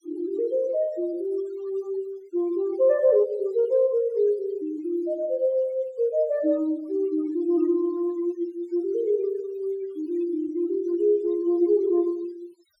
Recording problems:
noise reduction artefacts; signal-to-artefact ratio 27 dB

